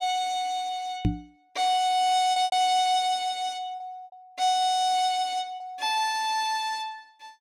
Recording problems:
lost packets; 4% of the sound replaced, filled with repeated pitch periods
knock on the microphone; at 1 s; peak +4 dB vs average level

